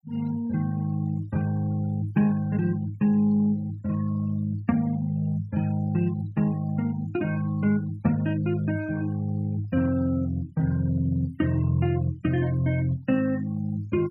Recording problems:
denoising artefacts; signal-to-artefact ratio 23 dB

